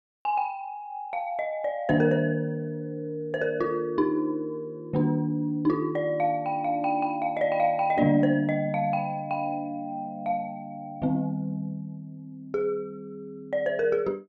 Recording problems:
none

